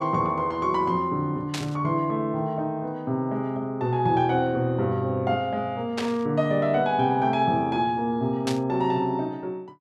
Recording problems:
static burst; at 1.5 s, at 6 s and at 8.5 s; peak -2 dB vs average level

